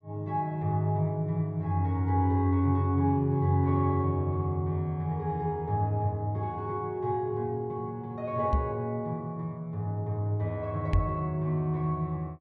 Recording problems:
microphone bump; at 8.5 s and at 11 s; peak +7 dB vs average level

